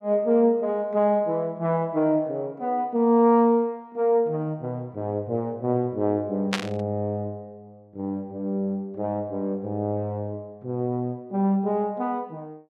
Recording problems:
static burst; at 6.5 s; peak +2 dB vs average level

